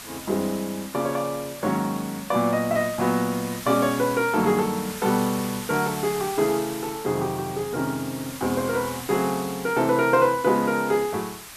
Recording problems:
background hiss; SNR 12 dB

